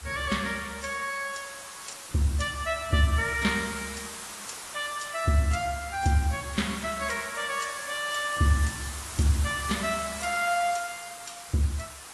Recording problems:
codec artefacts; AAC, log-spectral distance 14 dB
background hiss; SNR 10 dB

